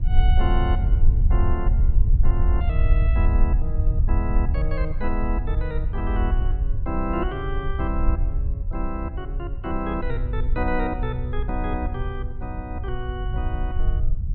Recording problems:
treble missing; nothing above 4.9 kHz
low-frequency rumble; below 66 Hz, SNR -6 dB

